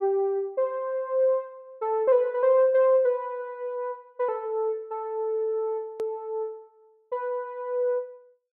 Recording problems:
edit click; at 6 s

